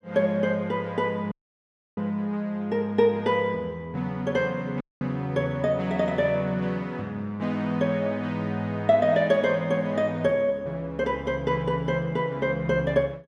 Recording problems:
audio cutting out; at 1.5 s for 0.5 s and at 5 s

